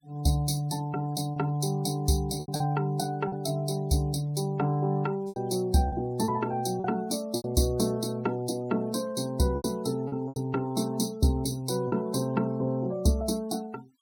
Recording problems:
noise reduction artefacts; signal-to-artefact ratio 23 dB
packet loss; 5% of the sound replaced, filled with repeated pitch periods

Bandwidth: 17 kHz